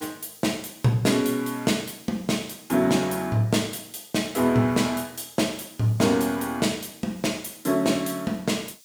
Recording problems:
hiss; slope +8 dB per octave, SNR 25 dB

